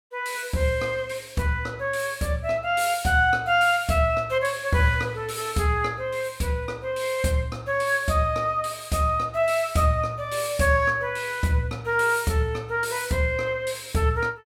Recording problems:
none

